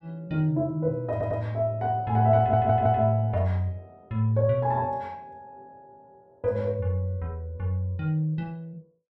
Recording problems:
audio stuttering; at 1 s and at 2.5 s

